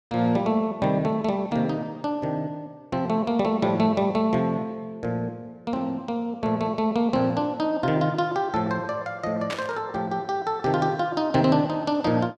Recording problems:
burst of static; at 9.5 s; peak -3 dB vs average level

